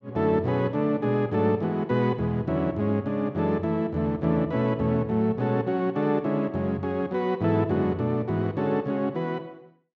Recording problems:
none

